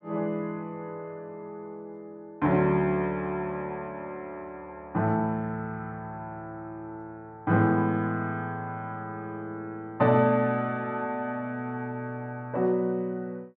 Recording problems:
none

